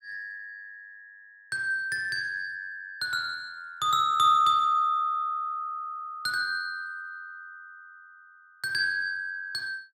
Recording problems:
none

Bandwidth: 16 kHz